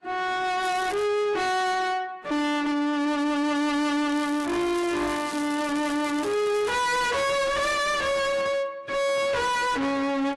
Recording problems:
lossy compression; AAC, log-spectral distance 3 dB, nothing above 11.6 kHz
distortion; soft clipping, signal-to-distortion ratio 6 dB
crackling; at 0.5 s and from 4 to 6.5 s; loose cable, SNR 14 dB

